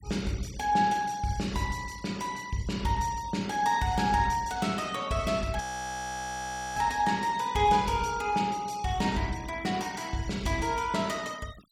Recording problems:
noise reduction artefacts; signal-to-artefact ratio 21 dB
audio freezing; at 5.5 s for 1 s

